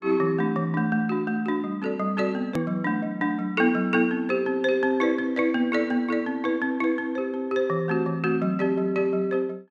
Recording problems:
edit click; at 2.5 s

